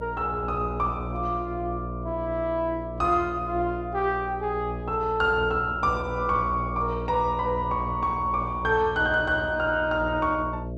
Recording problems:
hum; 60 Hz, harmonics up to 660 Hz, SNR 9 dB

